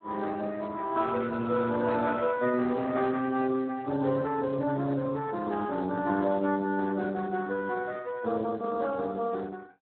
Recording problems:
phone line; 220 Hz to 2.6 kHz, Speex

